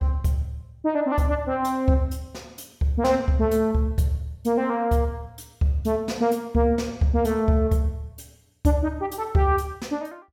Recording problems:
none

